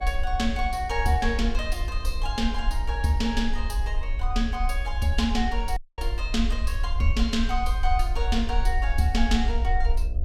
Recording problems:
electrical hum; 60 Hz, harmonics up to 720 Hz, SNR 18 dB
rumble; below 54 Hz, SNR 1 dB
dropout; at 6 s

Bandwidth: 16.5 kHz